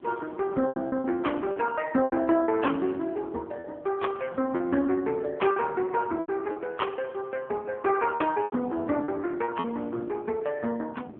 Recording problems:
phone line; 150 Hz to 3.4 kHz, AMR-NB
wind on the microphone; below 370 Hz, SNR 20 dB
lost packets; 7% of the sound replaced, filled with repeated pitch periods

